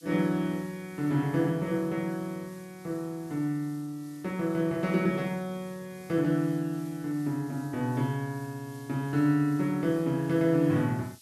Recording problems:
background hiss; slope +8 dB per octave, SNR 25 dB

